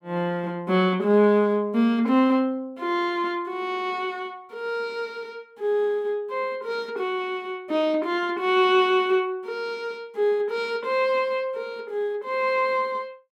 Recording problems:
none

